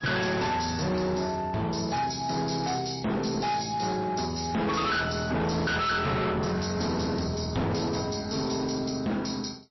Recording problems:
lossy compression; MP3, log-spectral distance 9 dB, nothing above 5.7 kHz
distortion; hard clipping, signal-to-distortion ratio 6 dB

